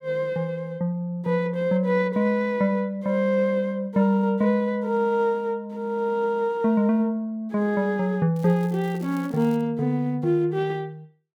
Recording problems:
crackling; from 8.5 to 9.5 s; loose cable, SNR 27 dB

